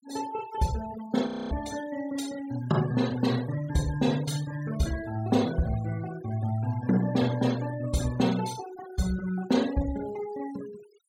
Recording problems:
denoising artefacts; signal-to-artefact ratio 16 dB
frozen audio; at 1.5 s

